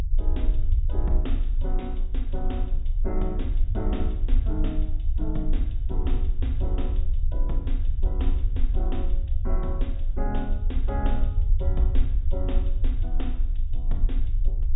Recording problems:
low-pass filter; nothing above 4 kHz
low-frequency rumble; below 50 Hz, strongest tone 28 Hz, SNR -8 dB

